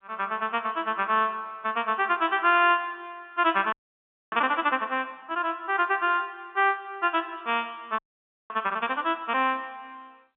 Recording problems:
telephone audio; 190 Hz to 3.6 kHz, G.711
frozen audio; at 3.5 s for 0.5 s and at 8 s for 0.5 s

